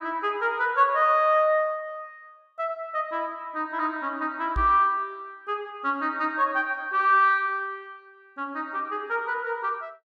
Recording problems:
microphone thump; at 4.5 s; peak -2 dB vs average level

